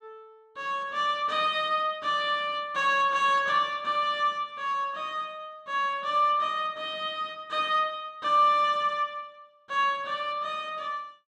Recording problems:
none

